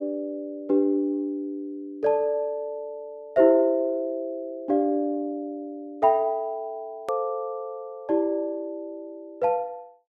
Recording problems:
hard cut with a click; at 7 s

